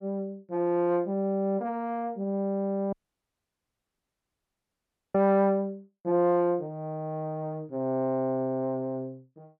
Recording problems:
audio cutting out; at 3 s for 2 s

